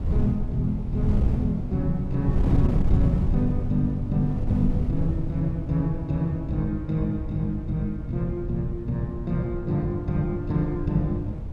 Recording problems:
wind on the microphone; below 130 Hz, SNR 3 dB

